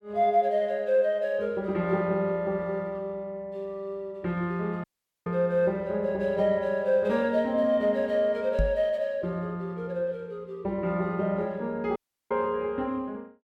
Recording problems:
dropout; at 5 s and at 12 s
microphone bump; at 8.5 s; peak +4 dB vs average level

